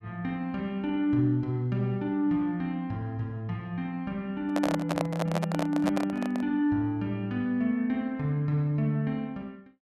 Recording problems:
handling noise; from 4.5 to 6.5 s; peak +3 dB vs average level

